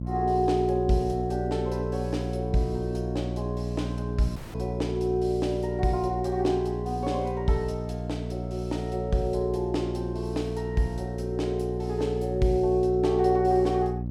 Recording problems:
electrical hum; 60 Hz, harmonics up to 540 Hz, SNR 5 dB
dropout; at 4.5 s

